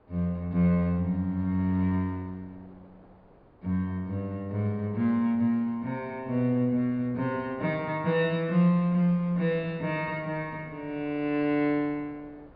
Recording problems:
low-pass filter; nothing above 4.9 kHz
wind on the microphone; below 740 Hz, SNR 27 dB

